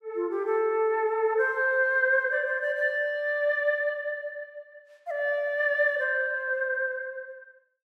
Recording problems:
none

